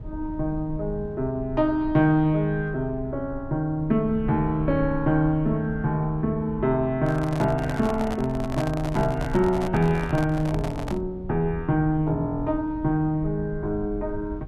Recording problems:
rumble; below 86 Hz, SNR 14 dB
handling noise; from 7 to 11 s; peak -4 dB vs average level

